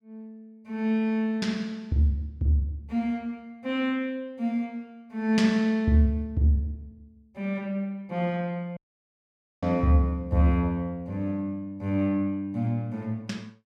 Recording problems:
dropout; at 9 s for 1 s

